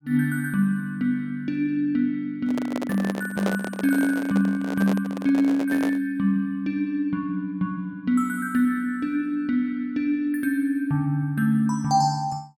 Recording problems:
microphone handling noise; from 2.5 to 6 s; peak +1 dB vs average level

